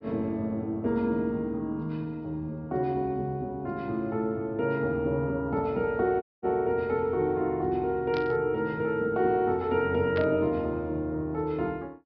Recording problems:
treble missing; nothing above 5.5 kHz
dropout; at 6 s
burst of static; at 8 s and at 10 s; peak -6 dB vs average level

